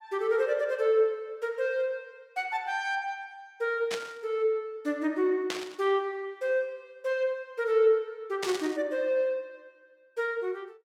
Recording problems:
burst of static; at 4 s, at 5.5 s and at 8.5 s; peak 0 dB vs average level

